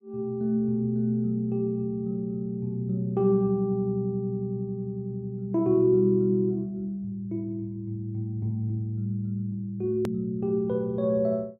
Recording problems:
hard cut with a click; at 10 s

